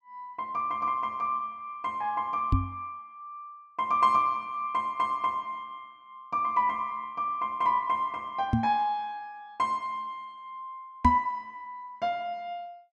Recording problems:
microphone thump; at 2.5 s, at 8.5 s and at 11 s; peak +8 dB vs average level

